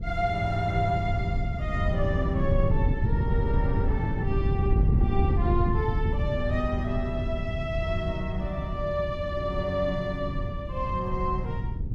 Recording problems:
wind noise; below 130 Hz, SNR -1 dB

